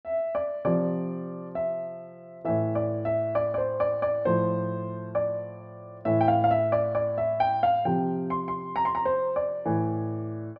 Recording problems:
none

